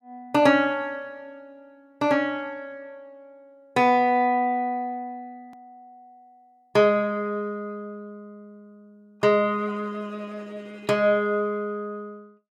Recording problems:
click at an edit; at 5.5 s

